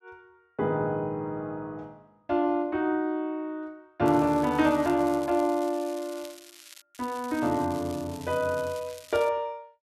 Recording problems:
crackle; from 4 to 7 s and from 7 to 9.5 s; loose cable, SNR 20 dB

